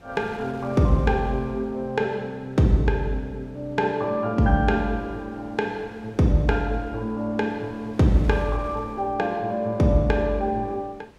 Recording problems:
wind noise; below 900 Hz, SNR 24 dB

